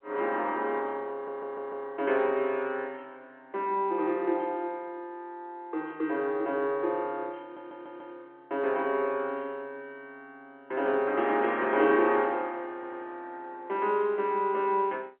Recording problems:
telephone audio; 260 Hz to 4 kHz, G.711
stutter; at 1 s, at 7.5 s and at 13 s

